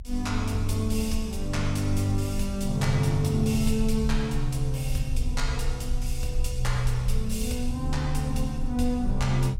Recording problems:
rumble; below 54 Hz, strongest tone 26 Hz, SNR 7 dB

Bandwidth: 16.5 kHz